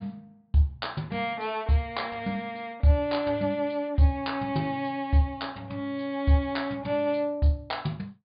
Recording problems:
treble missing; nothing above 4.8 kHz

